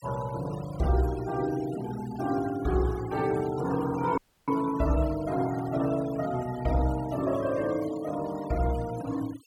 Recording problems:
noise reduction artefacts; signal-to-artefact ratio 17 dB
audio cutting out; at 4 s

